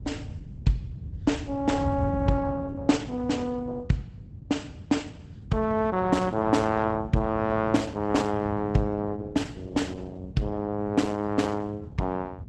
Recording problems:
lossy codec; Opus, log-spectral distance 2 dB, nothing above 12 kHz
wind noise; below 140 Hz, SNR 11 dB

